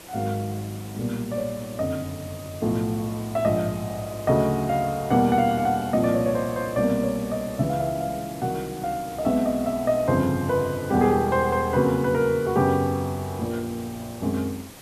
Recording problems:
background hiss; slope -4 dB per octave, SNR 18 dB

